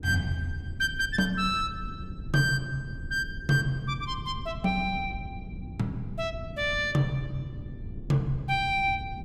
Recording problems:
low-frequency rumble; below 150 Hz, SNR 12 dB

